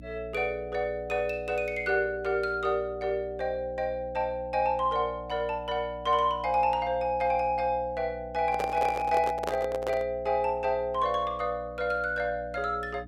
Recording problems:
mains hum; 60 Hz, harmonics up to 300 Hz, SNR 18 dB
handling noise; from 8.5 to 10 s; peak +1 dB vs average level

